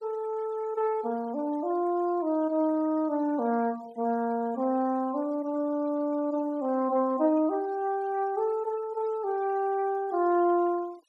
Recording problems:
denoising artefacts; signal-to-artefact ratio 26 dB

